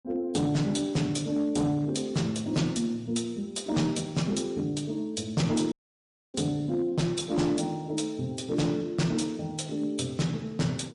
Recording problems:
lossy compression; MP3, log-spectral distance 3 dB, nothing above 10.4 kHz
distortion; hard clipping, signal-to-distortion ratio 12 dB
dropout; at 5.5 s for 0.5 s

